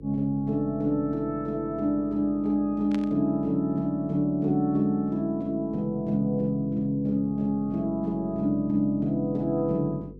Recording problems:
hum; 50 Hz, harmonics up to 500 Hz, SNR 20 dB
burst of static; at 3 s; peak -10 dB vs average level

